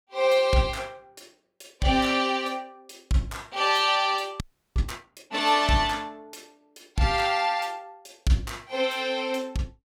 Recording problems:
audio freezing; at 4.5 s

